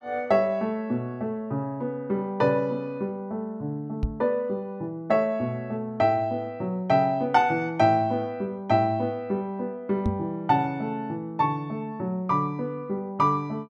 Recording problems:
knock on the microphone; at 4 s and at 10 s; peak +4 dB vs average level

